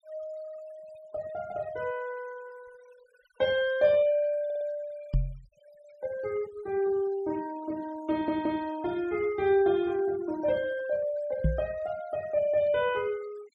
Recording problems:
noise reduction artefacts; signal-to-artefact ratio 23 dB
stutter; at 4.5 s and at 8 s
knock on the microphone; at 5 s and at 11 s; peak +6 dB vs average level

